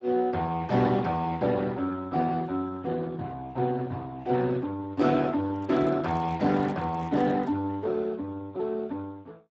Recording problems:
lossy codec; Speex, log-spectral distance 3 dB, nothing above 7.3 kHz
handling noise; from 5.5 to 7.5 s; peak -11 dB vs average level

